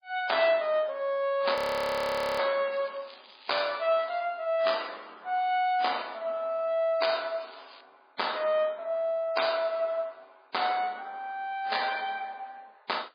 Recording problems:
lossy codec; MP3, log-spectral distance 6 dB, nothing above 19.5 kHz
audio freezing; at 1.5 s for 1 s
crackle; from 2.5 to 4 s and at 7.5 s; loose cable, SNR 22 dB

